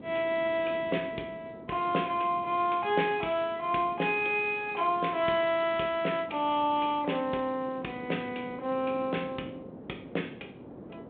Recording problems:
phone line; 240 Hz to 3.5 kHz, G.726
wind noise; below 470 Hz, SNR 17 dB

